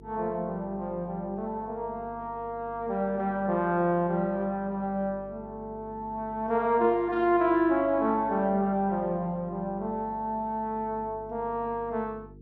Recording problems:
electrical hum; 50 Hz, harmonics up to 450 Hz, SNR 21 dB

